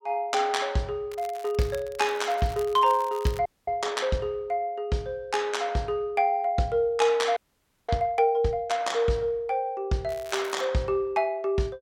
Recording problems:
crackling; from 1 to 3.5 s and at 10 s; loose cable, SNR 20 dB
audio freezing; at 3.5 s and at 7.5 s for 0.5 s

